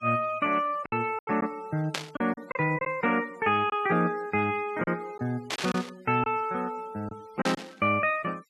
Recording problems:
denoising artefacts; signal-to-artefact ratio 24 dB
lost packets; 5% of the sound replaced, filled with silence
burst of static; at 2 s, at 5.5 s and at 7.5 s; peak +2 dB vs average level

